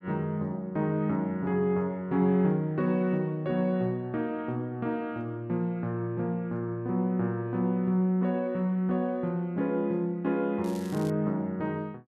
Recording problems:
crackle; at 11 s; loose cable, SNR 21 dB

